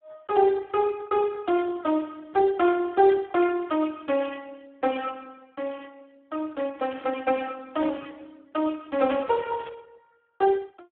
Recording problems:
telephone audio; 260 Hz to 3.1 kHz, Speex
static burst; 4 times, first at 3 s; peak -15 dB vs average level

